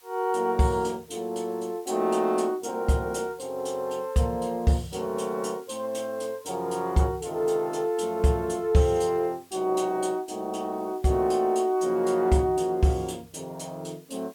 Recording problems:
background hiss; slope 0 dB per octave, SNR 28 dB

